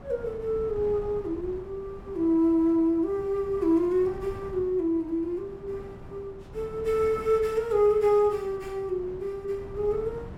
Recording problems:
wind on the microphone; below 360 Hz, SNR 18 dB

